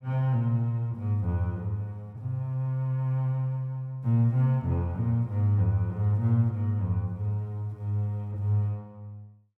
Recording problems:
none

